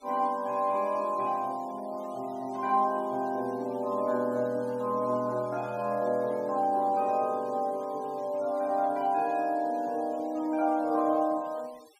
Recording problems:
noise reduction artefacts; signal-to-artefact ratio 26 dB

